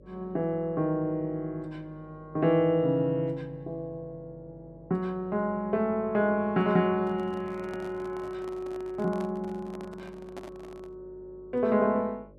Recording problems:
hum; 50 Hz, harmonics up to 600 Hz, SNR 25 dB
microphone handling noise; from 7 to 11 s; peak -9 dB vs average level

